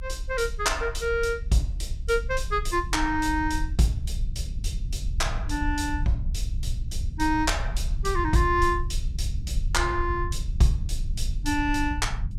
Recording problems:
low-frequency rumble; below 66 Hz, SNR 5 dB

